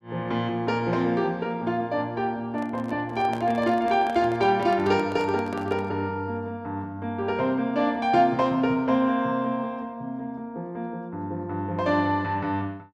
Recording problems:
handling noise; from 2.5 to 6 s; peak -6 dB vs average level

